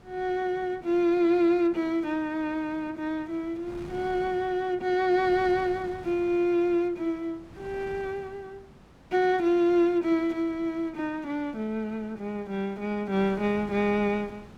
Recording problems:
wind on the microphone; below 710 Hz, SNR 22 dB

